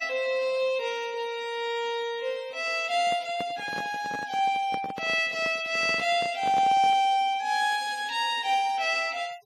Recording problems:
denoising artefacts; signal-to-artefact ratio 24 dB
microphone handling noise; from 3 to 7 s; peak -7 dB vs average level

